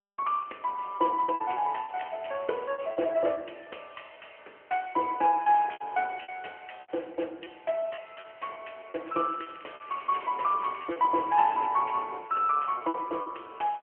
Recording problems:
phone line; 280 Hz to 3.1 kHz, AMR-NB
lost packets; 11% of the sound replaced, filled with repeated pitch periods
crackle; from 9 to 12 s; loose cable, SNR 23 dB

